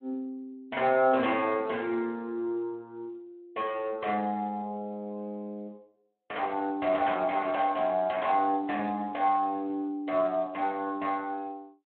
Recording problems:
telephone audio; 240 Hz to 3.6 kHz, Speex

